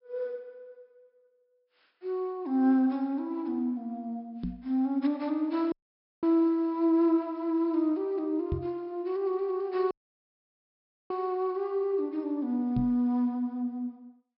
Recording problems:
treble missing; nothing above 5.3 kHz
knock on the microphone; at 4.5 s, at 8.5 s and at 13 s; peak +1 dB vs average level
dropout; at 5.5 s for 0.5 s and at 10 s for 1 s

